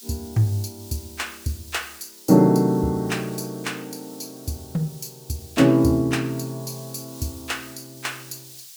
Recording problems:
hiss; slope +7 dB per octave, SNR 19 dB

